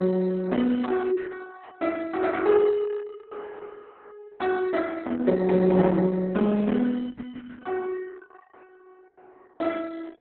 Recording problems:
lossy compression; Opus, log-spectral distance 4 dB, nothing above 4 kHz

